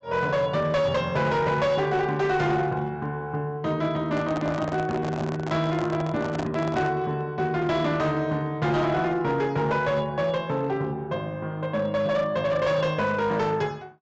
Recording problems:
low-pass filter; nothing above 8 kHz
distortion; hard clipping, uneven, signal-to-distortion ratio 12 dB
microphone handling noise; from 4 to 7 s; peak -2 dB vs average level

